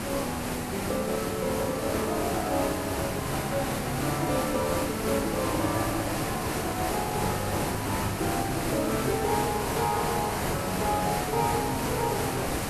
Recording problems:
background hiss; slope -5 dB per octave, SNR 1 dB

